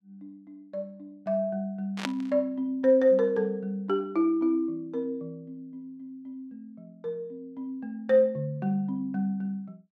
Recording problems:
burst of static; at 2 s; peak 0 dB vs average level

